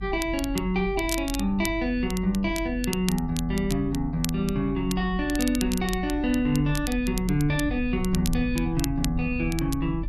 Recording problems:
rumble; below 66 Hz, strongest tone 46 Hz, SNR 9 dB
crackle; vinyl, SNR 11 dB

